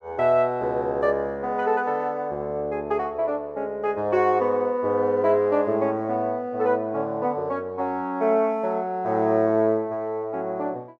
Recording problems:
none

